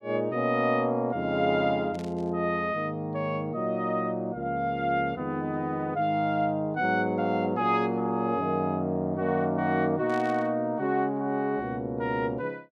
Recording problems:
burst of static; at 2 s and at 10 s; peak -14 dB vs average level

